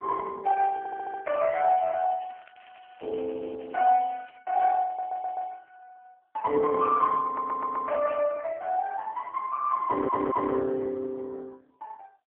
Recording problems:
telephone audio; 280 Hz to 3 kHz, AMR-NB
stutter; 4 times, first at 1 s
crackling; from 1.5 to 4.5 s and at 7 s; loose cable, SNR 29 dB

